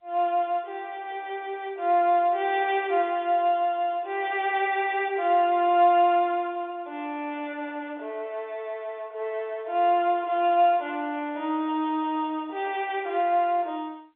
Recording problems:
telephone audio; 240 Hz to 3.9 kHz, G.711

